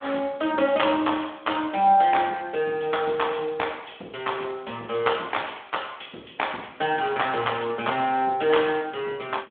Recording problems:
telephone audio; 220 Hz to 3.5 kHz, Speex

